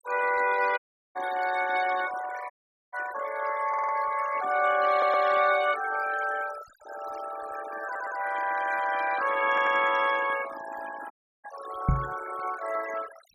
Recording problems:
noise reduction artefacts; signal-to-artefact ratio 13 dB
audio cutting out; at 1 s, at 2.5 s and at 11 s
stutter; 4 times, first at 3.5 s
microphone bump; at 12 s; peak +6 dB vs average level

